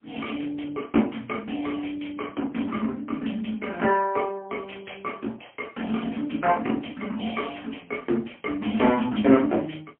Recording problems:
telephone audio; 190 Hz to 3.3 kHz, AMR-NB, then MP3

